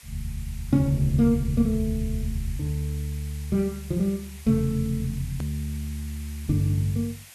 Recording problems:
background hiss; SNR 19 dB
edit click; at 5.5 s

